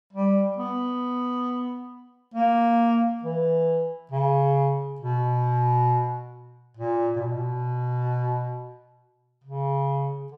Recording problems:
none

